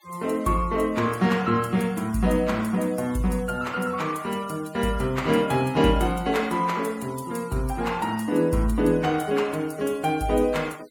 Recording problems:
denoising artefacts; signal-to-artefact ratio 22 dB

